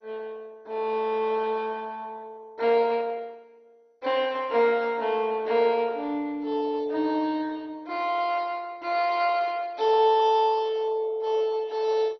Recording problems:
lossy codec; MP2, log-spectral distance 3 dB, nothing above 4.9 kHz

